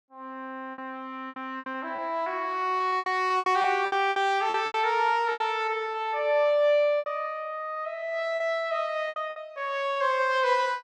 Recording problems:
packet loss; 11% of the sound replaced, filled with repeated pitch periods

